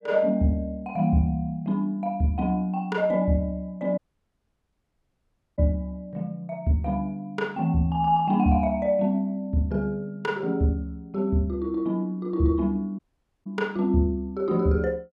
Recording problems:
audio cutting out; at 4 s for 1.5 s and at 13 s

